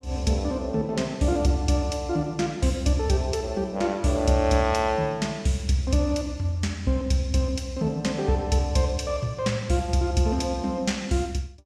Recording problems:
none

